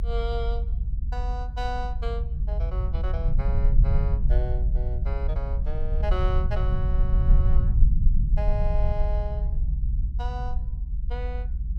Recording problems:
rumble; below 66 Hz, SNR -10 dB

